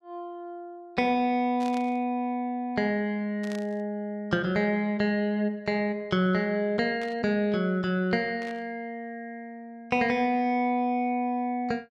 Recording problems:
static burst; 4 times, first at 1.5 s; peak -12 dB vs average level

